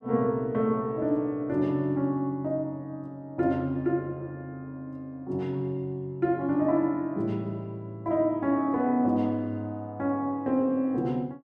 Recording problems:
none

